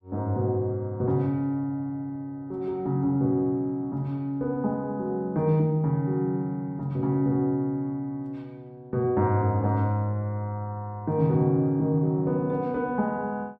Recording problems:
none

